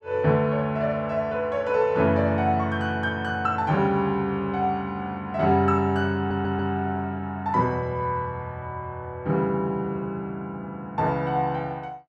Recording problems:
audio stuttering; at 6 s

